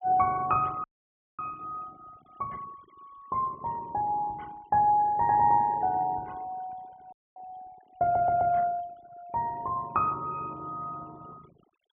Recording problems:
treble cut off; nothing above 3.5 kHz
denoising artefacts; signal-to-artefact ratio 26 dB
audio freezing; at 1 s for 0.5 s and at 7 s
stutter; at 8 s

